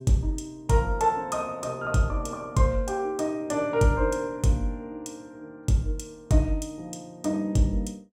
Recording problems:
none

